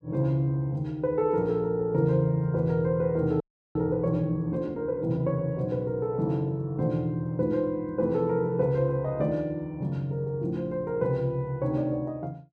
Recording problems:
audio freezing; at 3.5 s

